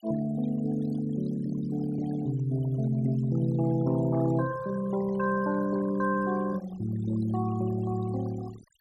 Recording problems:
denoising artefacts; signal-to-artefact ratio 17 dB

